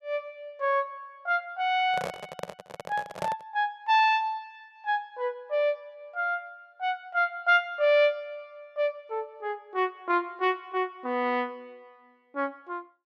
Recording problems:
handling noise; from 2 to 3.5 s; peak -2 dB vs average level

